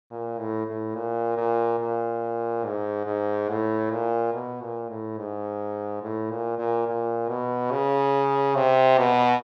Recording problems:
none

